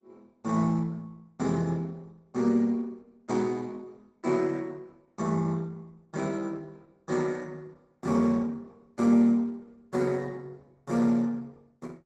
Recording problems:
lossy codec; Opus, log-spectral distance 3 dB, nothing above 12 kHz

